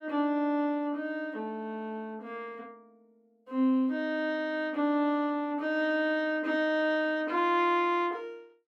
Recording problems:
none

